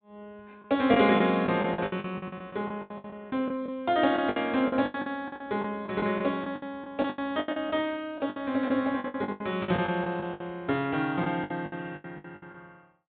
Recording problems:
treble cut off; nothing above 4 kHz
packet loss; 17% of the sound replaced, filled with the last packet

